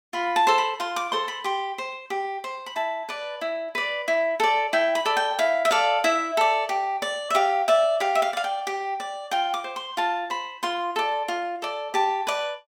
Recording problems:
none

